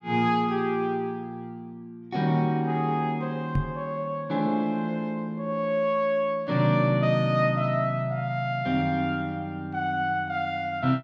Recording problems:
knock on the microphone; at 3.5 s; peak +5 dB vs average level

